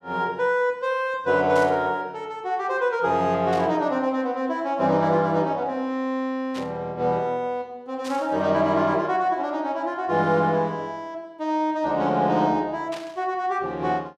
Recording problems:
static burst; 5 times, first at 1.5 s; peak -10 dB vs average level

